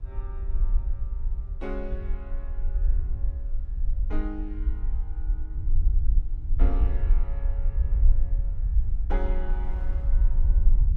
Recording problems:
low-frequency rumble; below 50 Hz, SNR -12 dB
wind noise; below 410 Hz, SNR 18 dB

